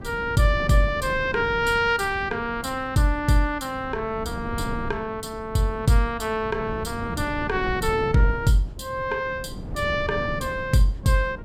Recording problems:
wind noise; below 250 Hz, SNR 11 dB

